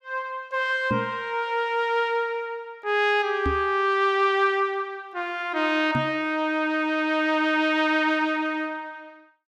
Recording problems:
microphone thump; at 1 s, at 3.5 s and at 6 s; peak 0 dB vs average level

